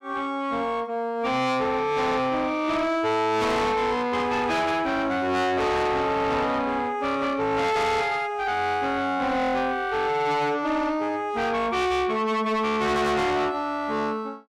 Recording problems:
distortion; soft clipping, signal-to-distortion ratio 7 dB

